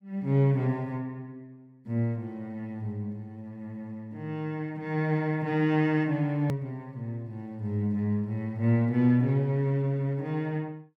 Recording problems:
edit click; at 6.5 s

